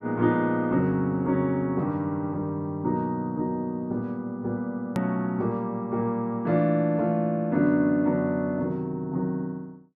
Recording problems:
hard cut with a click; at 5 s

